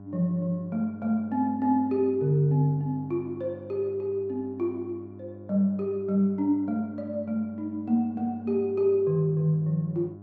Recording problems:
hum; 50 Hz, harmonics up to 1 kHz, SNR 18 dB

